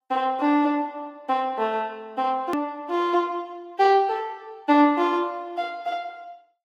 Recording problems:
lossy compression; Vorbis, log-spectral distance 2 dB
click at an edit; at 2.5 s

